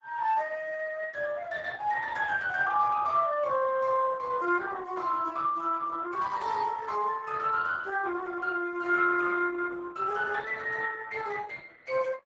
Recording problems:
lossy compression; Speex, then Opus, log-spectral distance 3 dB, nothing above 7.6 kHz

